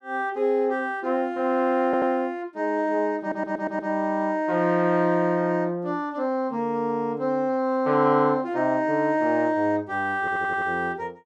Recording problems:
stutter; at 2 s, at 3 s and at 10 s

